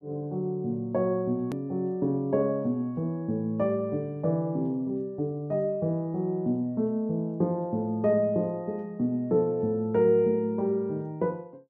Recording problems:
edit click; at 1.5 s

